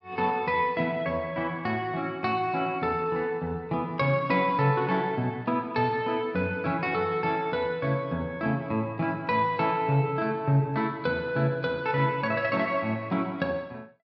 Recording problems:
none

